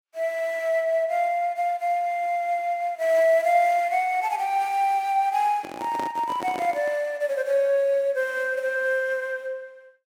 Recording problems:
microphone handling noise; from 5.5 to 7 s; peak -6 dB vs average level

